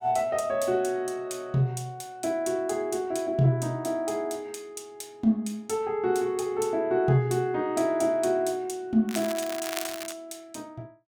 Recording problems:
crackling; from 9 to 10 s; loose cable, SNR 9 dB

